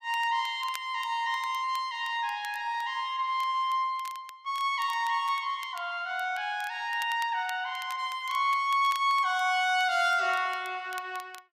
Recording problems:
crackle; vinyl, SNR 21 dB

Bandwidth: 15 kHz